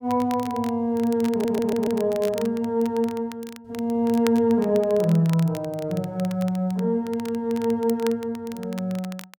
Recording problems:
crackling; vinyl, SNR 19 dB
audio stuttering; at 1.5 s

